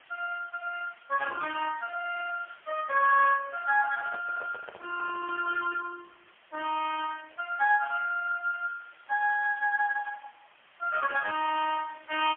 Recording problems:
telephone audio; 320 Hz to 3.3 kHz, AMR-NB, then MP3
background hiss; SNR 27 dB
handling noise; from 4 to 5.5 s; peak -11 dB vs average level

